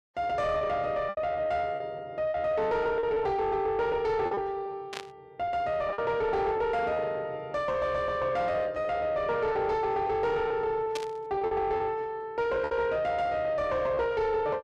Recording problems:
distorted audio; soft clipping, signal-to-distortion ratio 11 dB
lost packets; 7% of the sound replaced, filled with repeated pitch periods
static burst; at 5 s and at 11 s; peak -3 dB vs average level

